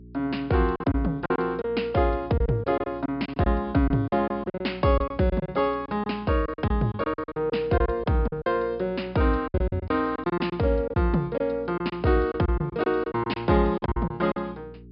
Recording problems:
treble cut off; nothing above 5.2 kHz
electrical hum; 60 Hz, harmonics up to 420 Hz, SNR 21 dB
packet loss; 12% of the sound replaced, filled with silence

